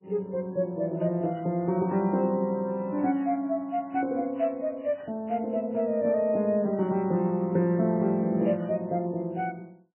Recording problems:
lossy codec; MP3, log-spectral distance 2 dB, nothing above 2.9 kHz

